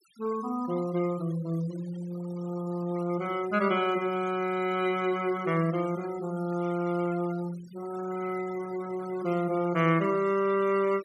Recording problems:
noise reduction artefacts; signal-to-artefact ratio 18 dB

